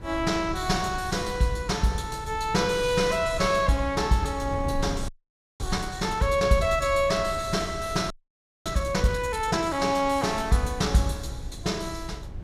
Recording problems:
wind on the microphone; below 110 Hz, SNR 13 dB
audio freezing; at 5 s for 0.5 s and at 8 s for 0.5 s

